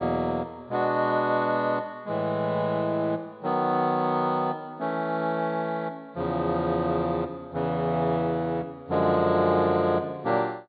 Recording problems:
treble missing; nothing above 4.6 kHz

